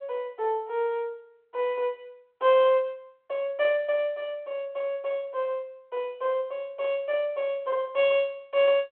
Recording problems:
telephone audio; 300 Hz to 3.5 kHz, G.726

